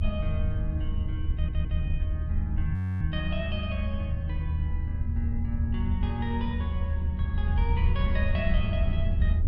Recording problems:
low-frequency rumble; below 80 Hz, SNR -5 dB
audio stuttering; at 1.5 s
audio freezing; at 2.5 s

